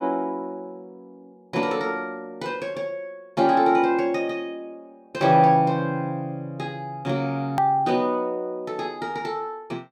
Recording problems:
click at an edit; at 7.5 s

